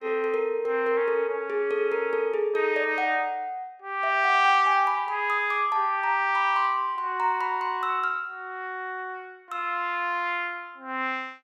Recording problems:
none

